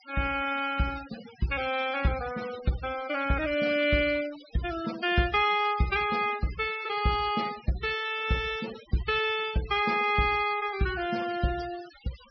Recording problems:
treble missing; nothing above 5.5 kHz
noise reduction artefacts; signal-to-artefact ratio 16 dB

